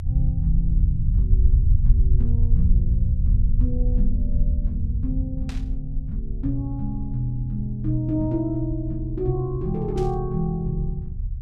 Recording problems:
rumble; below 72 Hz, SNR -3 dB
static burst; at 5.5 s and at 10 s; peak -8 dB vs average level

